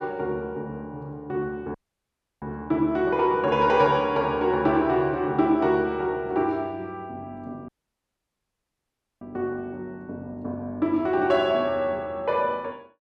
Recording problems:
audio cutting out; at 1.5 s for 0.5 s and at 7.5 s for 1.5 s

